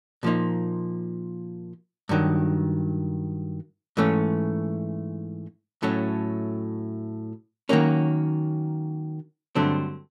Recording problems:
none

